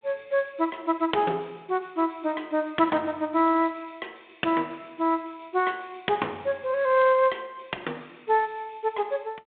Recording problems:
phone line; 260 Hz to 3.6 kHz, G.726

